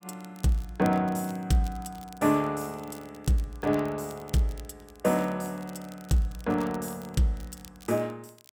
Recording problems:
crackling; vinyl, SNR 23 dB

